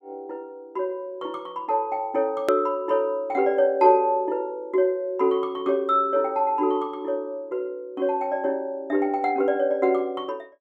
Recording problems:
edit click; at 2.5 s

